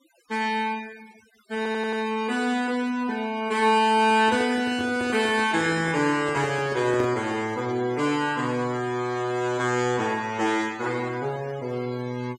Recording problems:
denoising artefacts; signal-to-artefact ratio 20 dB
audio stuttering; at 1.5 s
handling noise; from 4 to 7.5 s; peak -3 dB vs average level

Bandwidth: 16.5 kHz